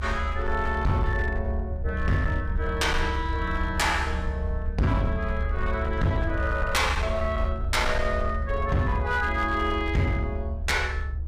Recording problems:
distorted audio; hard clipping, uneven, signal-to-distortion ratio 10 dB
rumble; below 72 Hz, SNR 4 dB

